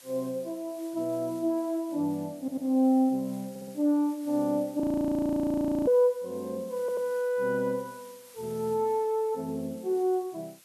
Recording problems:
hiss; slope +1 dB per octave, SNR 24 dB
stutter; at 2.5 s, at 3.5 s and at 7 s
frozen audio; at 5 s for 1 s

